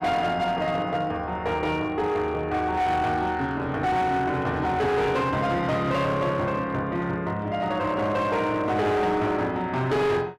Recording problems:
distortion; hard clipping, signal-to-distortion ratio 11 dB

